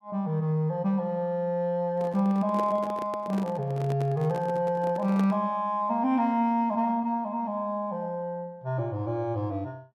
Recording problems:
handling noise; from 2 to 5.5 s; peak -4 dB vs average level

